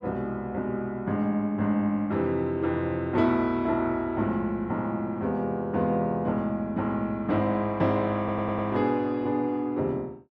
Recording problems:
audio stuttering; at 8 s

